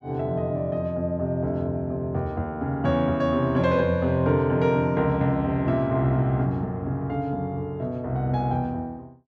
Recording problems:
none

